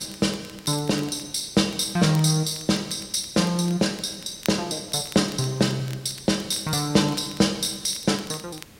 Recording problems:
hiss; SNR 25 dB
crackle; vinyl, SNR 21 dB

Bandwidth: 16 kHz